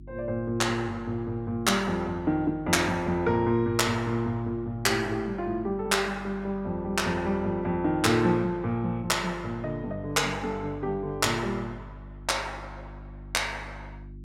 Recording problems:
mains hum; 50 Hz, harmonics up to 350 Hz, SNR 18 dB

